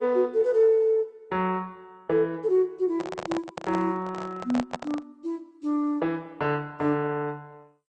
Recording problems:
codec artefacts; MP2, then Opus, log-spectral distance 2 dB, nothing above 8 kHz
microphone handling noise; from 3 to 5 s; peak -1 dB vs average level

